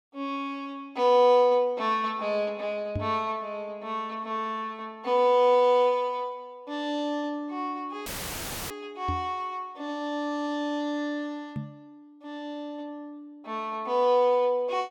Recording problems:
knock on the microphone; at 3 s, at 9 s and at 12 s; peak -1 dB vs average level
dropout; at 8 s for 0.5 s; filled with static

